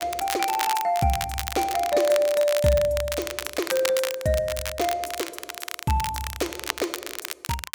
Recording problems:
crackling; vinyl, SNR 7 dB

